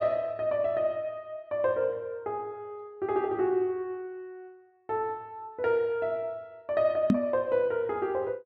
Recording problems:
knock on the microphone; at 7 s; peak +10 dB vs average level

